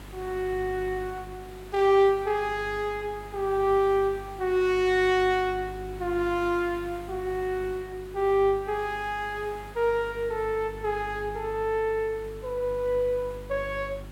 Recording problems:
hum; 50 Hz, harmonics up to 400 Hz, SNR 18 dB
background hiss; SNR 22 dB

